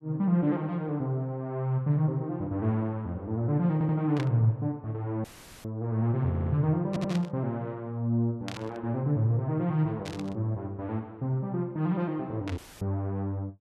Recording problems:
audio stuttering; at 3.5 s, at 6.5 s and at 7 s
burst of static; 5 times, first at 4 s; peak -5 dB vs average level
audio cutting out; at 5 s and at 13 s; filled with static

